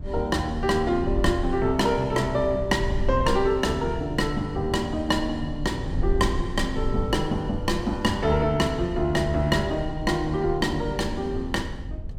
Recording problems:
wind noise; below 90 Hz, SNR 9 dB

